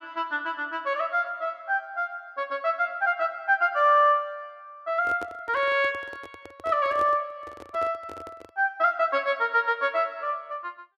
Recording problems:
microphone handling noise; from 5 to 8.5 s; peak -9 dB vs average level

